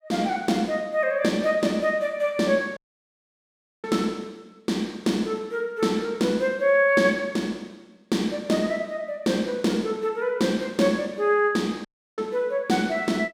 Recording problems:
dropout; at 3 s for 1 s and at 12 s

